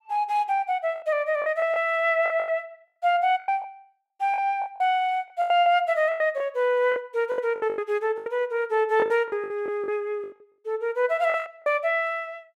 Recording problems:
packet loss; 13% of the sound replaced, filled with the last packet

